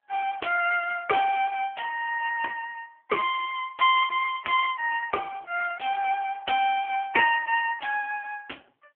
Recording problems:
telephone audio; 340 Hz to 3.1 kHz, AMR-NB

